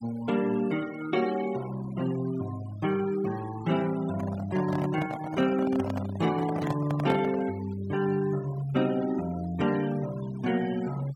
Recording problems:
noise reduction artefacts; signal-to-artefact ratio 17 dB
handling noise; from 4 to 7.5 s; peak 0 dB vs average level

